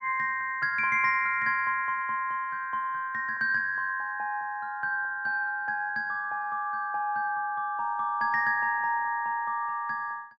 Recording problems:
none

